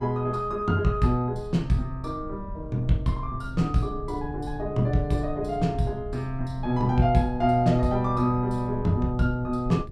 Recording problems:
low-frequency rumble; below 100 Hz, SNR 13 dB

